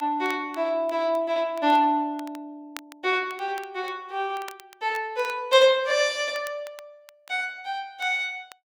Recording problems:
crackle; vinyl, SNR 23 dB

